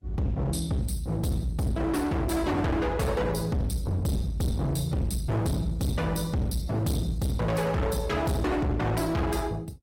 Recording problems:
codec artefacts; Opus, log-spectral distance 3 dB, nothing above 16.5 kHz
distortion; hard clipping, uneven, signal-to-distortion ratio 5 dB

